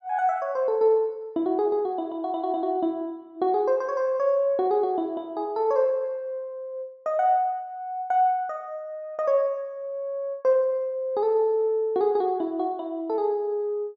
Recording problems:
none

